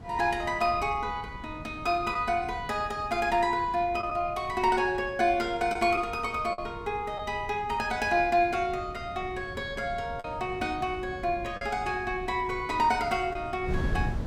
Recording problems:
wind on the microphone; below 180 Hz, SNR 14 dB
lost packets; 1.6% of the sound replaced, filled with the last packet

